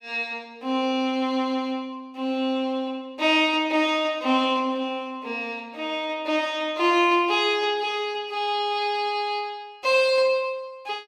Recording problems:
none

